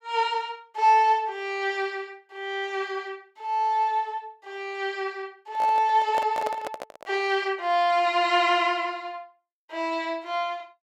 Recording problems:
handling noise; from 5.5 to 7 s; peak -2 dB vs average level

